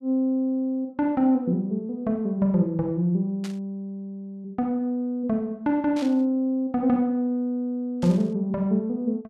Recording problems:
burst of static; at 3.5 s, at 6 s and at 8 s; peak -11 dB vs average level

